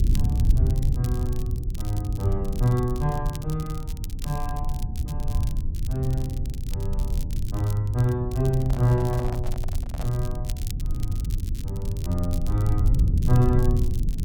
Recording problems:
low-frequency rumble; below 94 Hz, SNR 1 dB
crackling; vinyl, SNR 18 dB
microphone handling noise; from 8.5 to 10 s; peak -8 dB vs average level

